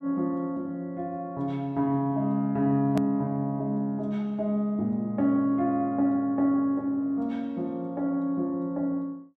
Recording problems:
hard cut with a click; at 3 s

